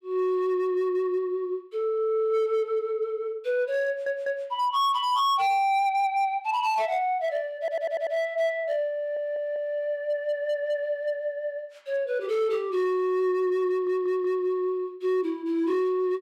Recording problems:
distortion; hard clipping, signal-to-distortion ratio 12 dB
stutter; 4 times, first at 4 s

